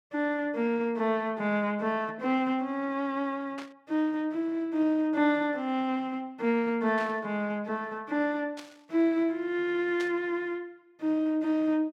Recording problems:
burst of static; 4 times, first at 3.5 s; peak -9 dB vs average level

